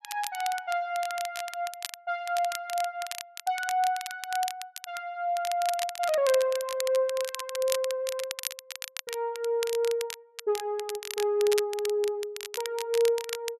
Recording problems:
crackling; vinyl, SNR 9 dB

